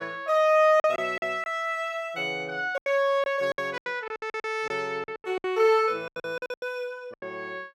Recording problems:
packet loss; 14% of the sound replaced, filled with silence

